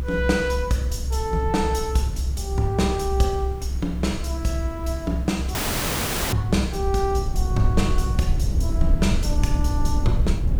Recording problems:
background hiss; SNR 16 dB
rumble; below 68 Hz, SNR 1 dB
audio cutting out; at 5.5 s for 1 s

